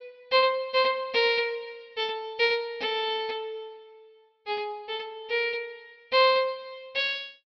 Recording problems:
treble missing; nothing above 5.5 kHz

